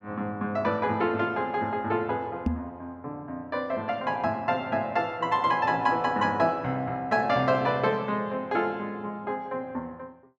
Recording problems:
microphone bump; at 2.5 s; peak +5 dB vs average level

